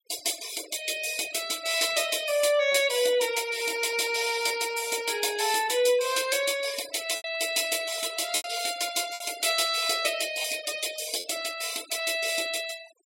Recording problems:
noise reduction artefacts; signal-to-artefact ratio 15 dB
packet loss; 3% of the sound replaced, filled with repeated pitch periods

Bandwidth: 16 kHz